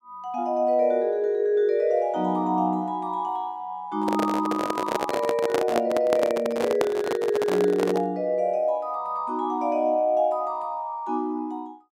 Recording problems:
microphone handling noise; from 4 to 8 s; peak +4 dB vs average level

